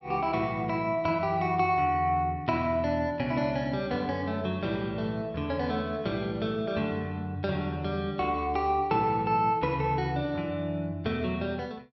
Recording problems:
treble missing; nothing above 5.8 kHz

